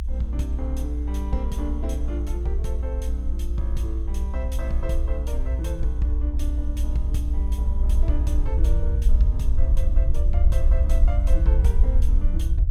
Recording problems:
low-frequency rumble; below 60 Hz, SNR -9 dB

